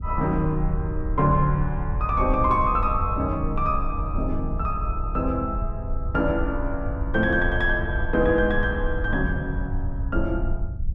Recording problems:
low-frequency rumble; below 76 Hz, SNR 5 dB

